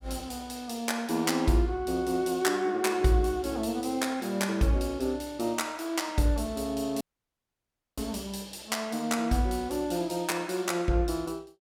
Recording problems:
dropout; at 7 s for 1 s

